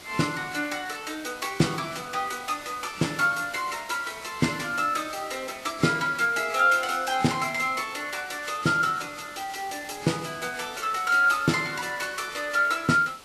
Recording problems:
lossy codec; Vorbis, log-spectral distance 5 dB, nothing above 13.1 kHz
background hiss; slope -2 dB per octave, SNR 19 dB

